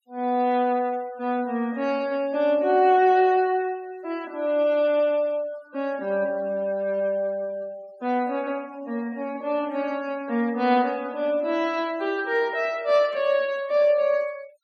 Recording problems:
noise reduction artefacts; signal-to-artefact ratio 25 dB

